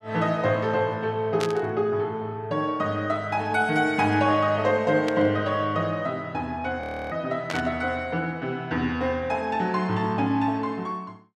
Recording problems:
burst of static; at 1.5 s, at 5 s and at 7.5 s; peak -3 dB vs average level
frozen audio; at 7 s

